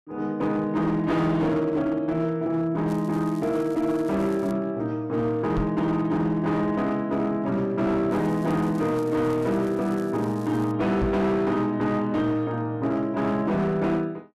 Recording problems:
distorted audio; hard clipping, signal-to-distortion ratio 12 dB
crackle; from 3 to 4.5 s and from 8 to 11 s; loose cable, SNR 27 dB
knock on the microphone; at 5.5 s and at 11 s; peak +1 dB vs average level

